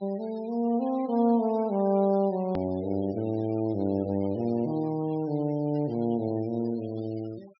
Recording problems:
treble cut off; nothing above 5.5 kHz
denoising artefacts; signal-to-artefact ratio 25 dB
hard cut with a click; at 2.5 s

